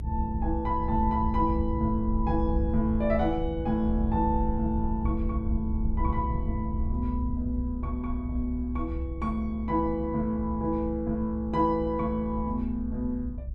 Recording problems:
low-frequency rumble; below 78 Hz, SNR 4 dB

